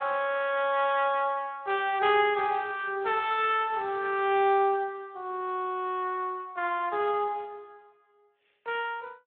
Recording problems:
phone line; 300 Hz to 3.7 kHz, Speex

